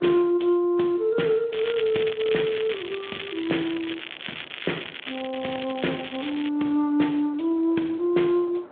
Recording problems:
telephone audio; 220 Hz to 3.5 kHz, Speex
wind noise; below 970 Hz, SNR 25 dB
crackle; from 1.5 to 6.5 s; loose cable, SNR 10 dB

